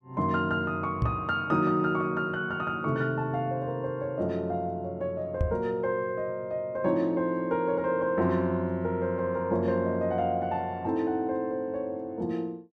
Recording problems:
knock on the microphone; at 1 s and at 5.5 s; peak +5 dB vs average level

